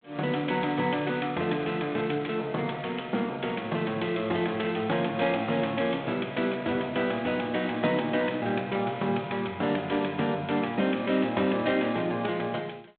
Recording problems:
telephone audio; 260 Hz to 3.7 kHz, G.726

